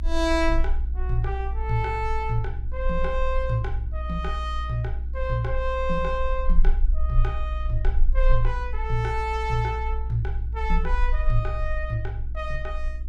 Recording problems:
hum; 60 Hz, harmonics up to 360 Hz, SNR 17 dB
low-frequency rumble; below 60 Hz, strongest tone 26 Hz, SNR 0 dB

